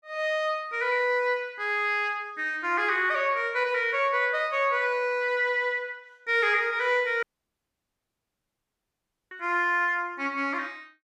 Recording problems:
dropout; at 7 s for 2 s

